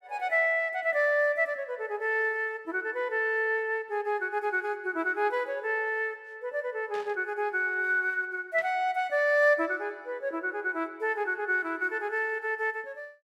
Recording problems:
burst of static; at 7 s and at 8.5 s; peak -14 dB vs average level

